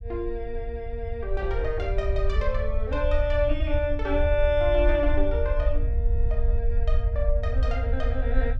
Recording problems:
rumble; below 62 Hz, SNR 0 dB

